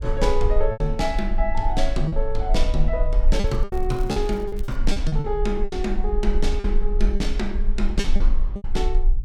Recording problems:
rumble; below 40 Hz, strongest tone 20 Hz, SNR 0 dB
lost packets; 9% of the sound replaced, filled with repeated pitch periods
crackle; from 3.5 to 5 s; loose cable, SNR 25 dB

